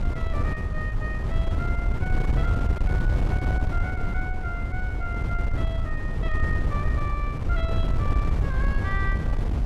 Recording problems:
wind noise; below 100 Hz, SNR -8 dB

